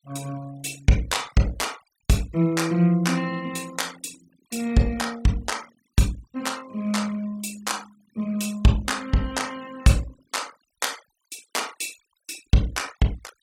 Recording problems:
noise reduction artefacts; signal-to-artefact ratio 21 dB

